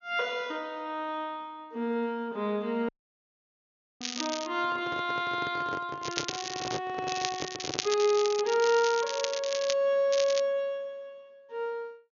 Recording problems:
treble missing; nothing above 6.8 kHz
audio cutting out; at 3 s for 1 s
crackling; 4 times, first at 4 s; loose cable, SNR 6 dB
microphone handling noise; from 4.5 to 8 s; peak -2 dB vs average level

